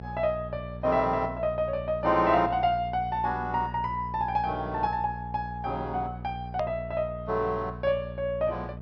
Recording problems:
low-pass filter; nothing above 6 kHz
electrical hum; 60 Hz, harmonics up to 900 Hz, SNR 11 dB
hard cut with a click; at 6.5 s

